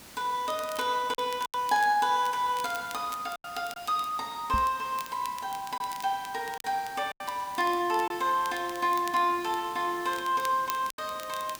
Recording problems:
background hiss; slope -2 dB per octave, SNR 18 dB
crackle; vinyl, SNR 18 dB
lost packets; 4% of the sound replaced, filled with silence
microphone thump; at 4.5 s; peak 0 dB vs average level

